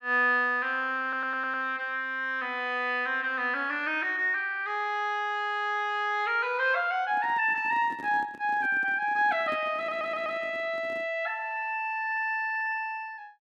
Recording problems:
stutter; at 1 s and at 10 s
handling noise; from 7 to 11 s; peak -10 dB vs average level

